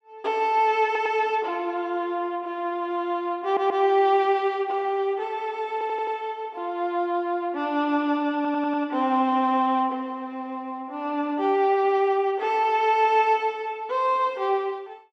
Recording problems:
audio stuttering; 4 times, first at 1 s

